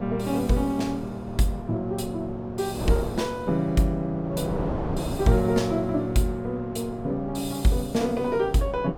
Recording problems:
electrical hum; 50 Hz, harmonics up to 1.6 kHz, SNR 28 dB
wind noise; below 580 Hz, SNR 10 dB

